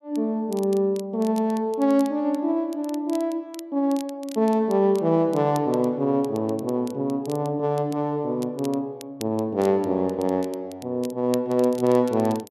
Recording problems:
crackling; vinyl, SNR 22 dB

